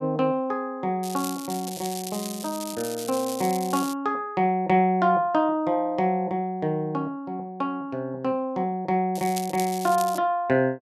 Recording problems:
crackling; from 1 to 4 s and from 9 to 10 s; loose cable, SNR 11 dB

